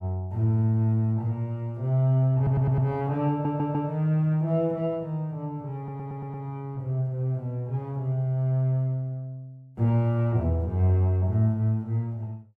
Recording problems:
audio stuttering; at 2.5 s, at 3.5 s and at 6 s

